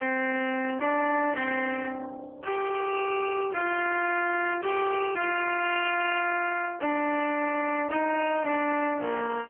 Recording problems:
phone line; 260 Hz to 2.8 kHz, AMR-NB
distorted audio; soft clipping, signal-to-distortion ratio 7 dB

